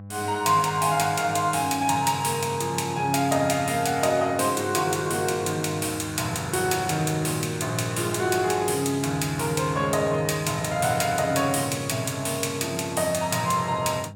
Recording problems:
hum; 50 Hz, harmonics up to 800 Hz, SNR 17 dB

